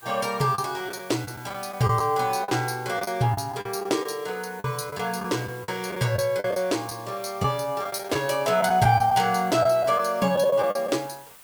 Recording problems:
hiss; slope -1 dB per octave, SNR 22 dB
lost packets; 8% of the sound replaced, filled with the last packet

